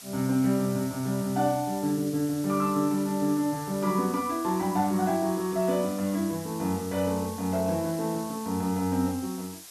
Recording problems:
hiss; slope +2 dB per octave, SNR 15 dB

